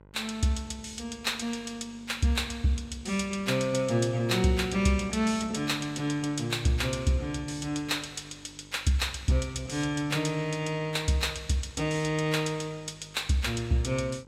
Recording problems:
electrical hum; 50 Hz, harmonics up to 1.6 kHz, SNR 25 dB

